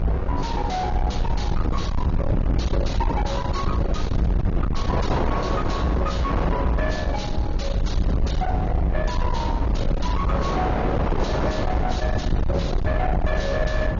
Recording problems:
low-pass filter; nothing above 6.9 kHz
lossy codec; AAC, log-spectral distance 2 dB
distortion; soft clipping, signal-to-distortion ratio 6 dB
rumble; below 130 Hz, SNR -1 dB
wind on the microphone; below 830 Hz, SNR 4 dB

